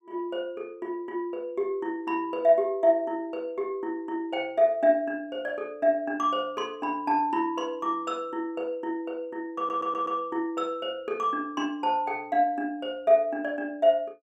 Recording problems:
audio stuttering; at 9.5 s

